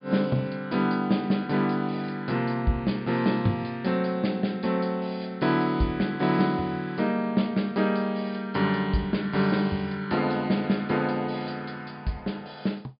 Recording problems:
treble missing; nothing above 5 kHz

